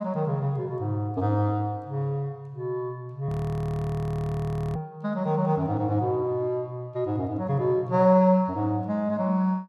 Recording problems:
frozen audio; at 3.5 s for 1.5 s

